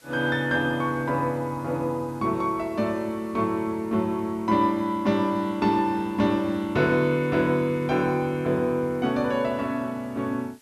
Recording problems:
hiss; slope 0 dB per octave, SNR 30 dB

